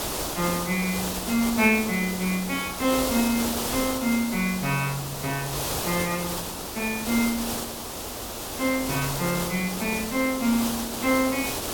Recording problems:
background hiss; SNR 4 dB

